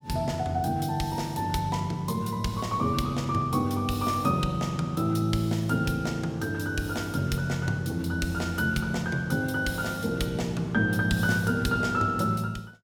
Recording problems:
none

